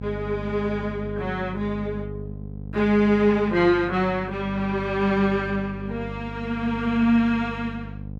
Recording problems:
hum; 50 Hz, harmonics up to 550 Hz, SNR 12 dB

